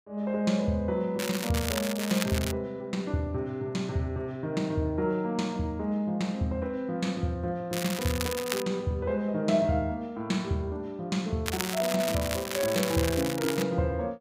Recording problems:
crackling; from 1 to 2.5 s, at 7.5 s and from 11 to 14 s; loose cable, SNR 5 dB

